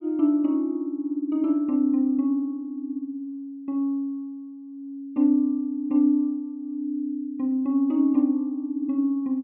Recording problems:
none

